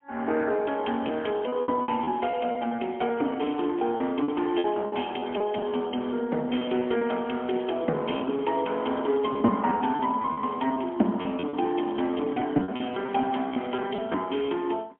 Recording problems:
telephone audio; 220 Hz to 3.3 kHz, AMR-NB, then MP3
packet loss; 11% of the sound replaced, filled with repeated pitch periods

